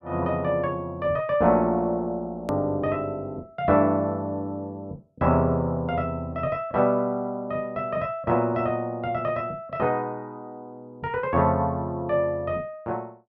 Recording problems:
click at an edit; at 2.5 s

